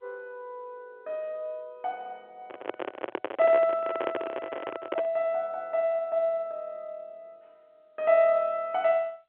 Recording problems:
telephone audio; 220 Hz to 3.4 kHz, G.711
handling noise; from 2.5 to 5 s; peak +1 dB vs average level

